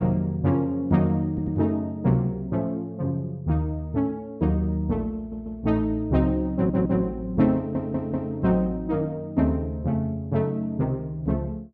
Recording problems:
audio stuttering; 4 times, first at 1.5 s

